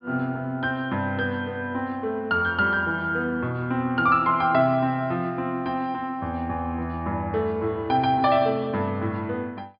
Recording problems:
low-pass filter; nothing above 5.5 kHz

